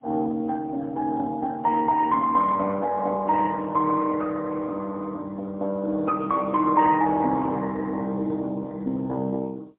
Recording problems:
phone line; 240 Hz to 2.1 kHz, AMR-NB, then MP3

